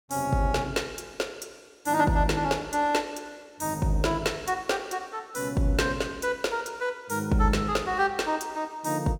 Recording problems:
none

